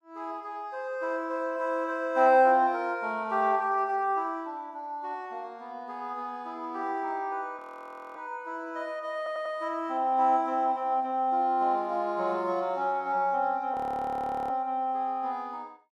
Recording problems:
audio freezing; at 7.5 s for 0.5 s and at 14 s for 1 s
stutter; at 9 s

